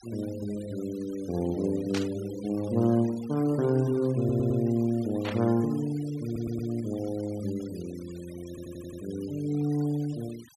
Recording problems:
denoising artefacts; signal-to-artefact ratio 21 dB
static burst; at 2 s and at 5 s; peak -3 dB vs average level
audio stuttering; at 4 s, at 6 s and at 8.5 s

